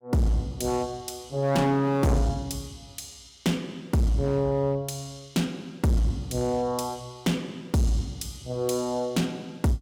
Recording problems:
distorted audio; hard clipping, signal-to-distortion ratio 7 dB

